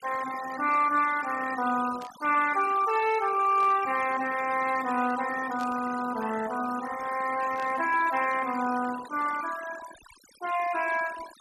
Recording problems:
noise reduction artefacts; signal-to-artefact ratio 14 dB
static burst; 4 times, first at 2 s; peak -14 dB vs average level

